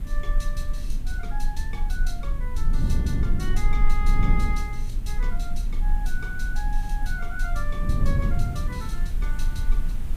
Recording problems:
hiss; SNR 16 dB
rumble; below 34 Hz, strongest tone 18 Hz, SNR -6 dB
wind noise; below 150 Hz, SNR -4 dB

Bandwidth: 15.5 kHz